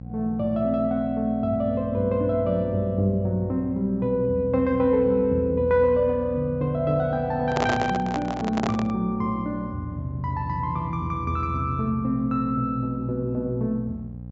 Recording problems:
low-pass filter; nothing above 7.6 kHz
electrical hum; 60 Hz, harmonics up to 540 Hz, SNR 13 dB
microphone handling noise; from 7.5 to 9 s; peak +3 dB vs average level

